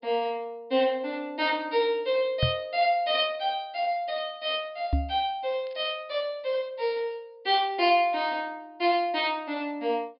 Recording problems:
low-pass filter; nothing above 5.5 kHz
microphone thump; at 2.5 s and at 5 s; peak +5 dB vs average level
crackling; at 5.5 s; loose cable, SNR 29 dB

